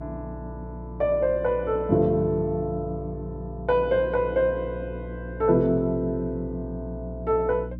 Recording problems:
hum; 60 Hz, harmonics up to 300 Hz, SNR 12 dB

